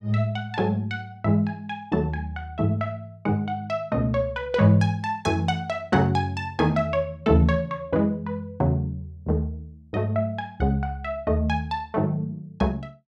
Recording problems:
none

